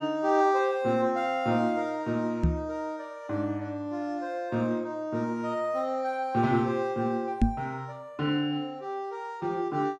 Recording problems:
microphone bump; at 2.5 s and at 7.5 s; peak +9 dB vs average level

